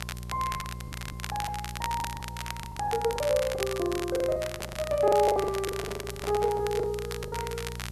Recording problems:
hum; 60 Hz, harmonics up to 780 Hz, SNR 12 dB
hiss; slope +5 dB per octave, SNR 27 dB
crackling; vinyl, SNR 9 dB
packet loss; 16% of the sound replaced, filled with the last packet
handling noise; from 4.5 to 7 s; peak -6 dB vs average level

